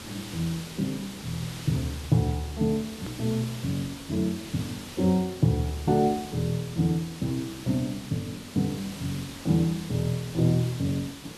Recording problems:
hiss; SNR 12 dB
hard cut with a click; at 3 s

